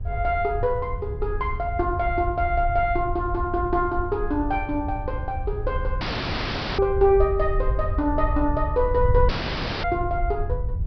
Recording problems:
low-pass filter; nothing above 5.5 kHz
wind noise; below 78 Hz, SNR 5 dB
audio cutting out; at 6 s for 1 s and at 9.5 s for 0.5 s

